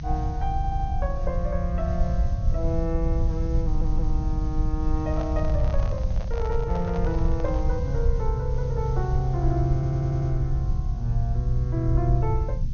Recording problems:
low-pass filter; nothing above 6.5 kHz
background hiss; slope +1 dB per octave, SNR 26 dB
low-frequency rumble; below 76 Hz, SNR -2 dB
audio stuttering; at 0.5 s, at 3.5 s and at 9.5 s
microphone handling noise; from 5 to 7.5 s; peak -5 dB vs average level

